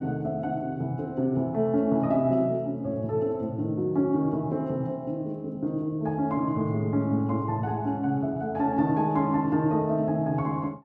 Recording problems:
none

